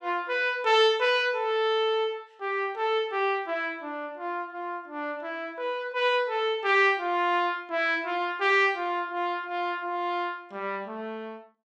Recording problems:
none

